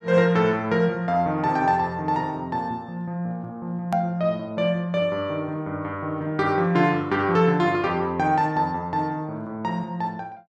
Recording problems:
click at an edit; at 4 s

